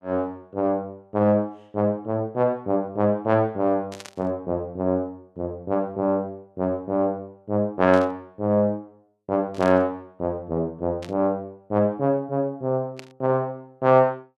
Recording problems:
burst of static; 5 times, first at 4 s; peak -10 dB vs average level

